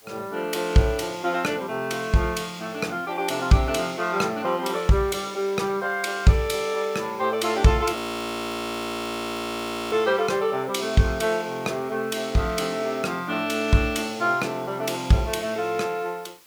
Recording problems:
background hiss; slope -1 dB per octave, SNR 26 dB
frozen audio; at 8 s for 2 s

